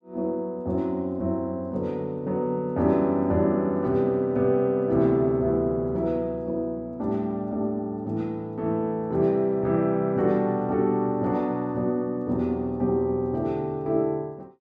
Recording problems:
none

